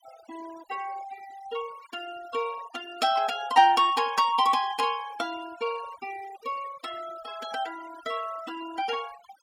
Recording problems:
denoising artefacts; signal-to-artefact ratio 17 dB

